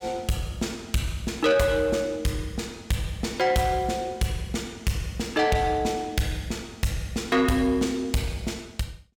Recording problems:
distortion; soft clipping, signal-to-distortion ratio 11 dB

